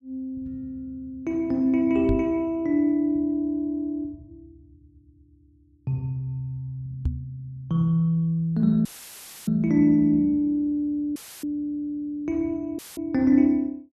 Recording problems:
microphone bump; at 2 s and at 7 s; peak +2 dB vs average level
audio cutting out; at 9 s for 0.5 s, at 11 s and at 13 s; filled with static

